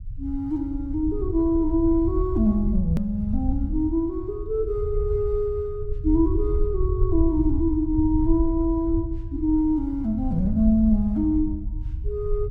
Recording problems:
low-frequency rumble; below 76 Hz, SNR 6 dB
click at an edit; at 3 s

